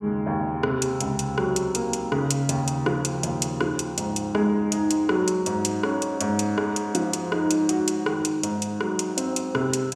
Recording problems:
none

